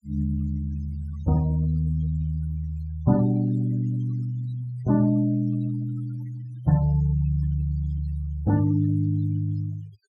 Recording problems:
denoising artefacts; signal-to-artefact ratio 22 dB

